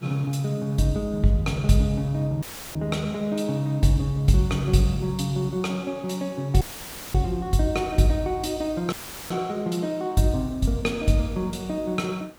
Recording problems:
background hiss; SNR 28 dB
dropout; at 2.5 s, at 6.5 s for 0.5 s and at 9 s; filled with static

